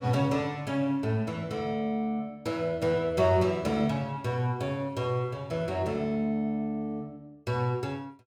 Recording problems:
none

